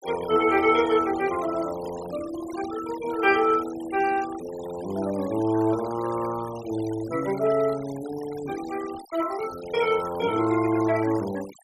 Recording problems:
denoising artefacts; signal-to-artefact ratio 16 dB

